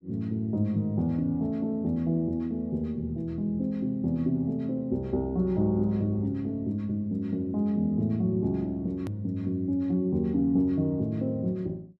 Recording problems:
edit click; at 9 s

